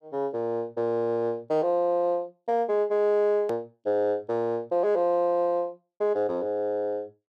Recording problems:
hard cut with a click; at 3.5 s

